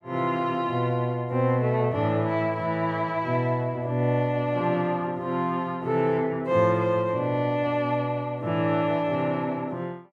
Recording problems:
none

